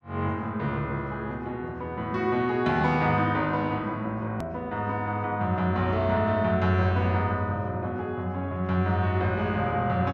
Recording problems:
click at an edit; at 4.5 s

